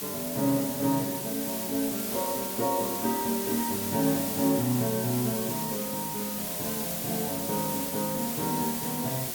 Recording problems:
background hiss; SNR 2 dB

